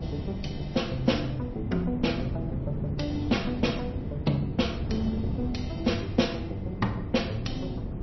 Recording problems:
codec artefacts; MP3, log-spectral distance 3 dB, nothing above 5.8 kHz
hum; 60 Hz, harmonics up to 720 Hz, SNR 22 dB
wind noise; below 250 Hz, SNR 5 dB

